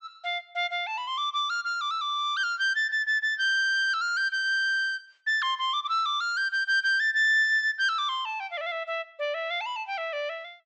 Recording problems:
treble missing; nothing above 8 kHz

